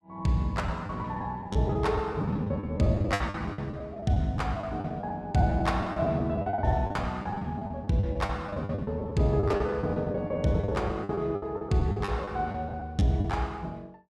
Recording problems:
packet loss; 16% of the sound replaced, filled with the last packet

